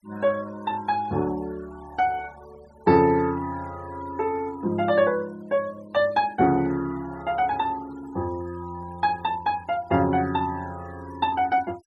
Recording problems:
denoising artefacts; signal-to-artefact ratio 23 dB

